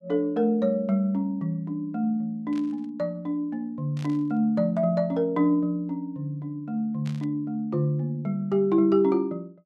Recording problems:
static burst; at 2.5 s, at 4 s and at 7 s; peak -14 dB vs average level

